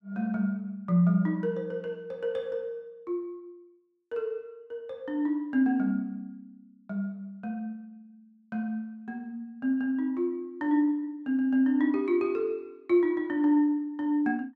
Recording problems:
none

